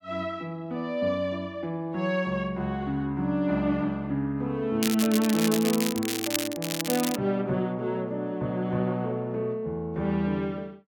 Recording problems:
crackle; from 5 to 7 s; loose cable, SNR 3 dB

